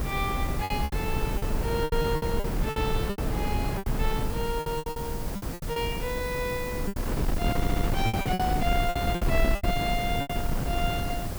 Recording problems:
hiss; slope +4 dB per octave, SNR 9 dB
wind noise; below 220 Hz, SNR -1 dB
packet loss; 13% of the sound replaced, filled with repeated pitch periods
audio stuttering; at 7.5 s

